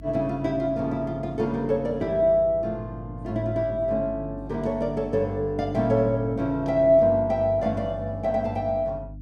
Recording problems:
hum; 50 Hz, harmonics up to 300 Hz, SNR 17 dB

